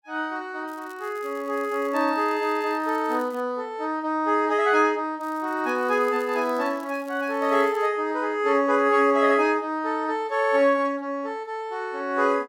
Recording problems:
crackle; from 0.5 to 3.5 s and from 5 to 8 s; loose cable, SNR 28 dB

